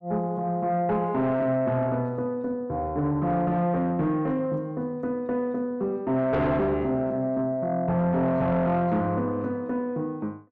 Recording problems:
distortion; soft clipping, signal-to-distortion ratio 12 dB

